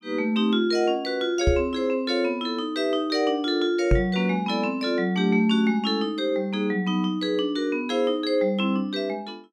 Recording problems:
microphone thump; at 1.5 s and at 4 s; peak +5 dB vs average level

